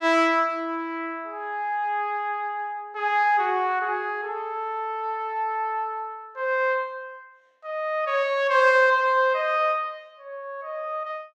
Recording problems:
none

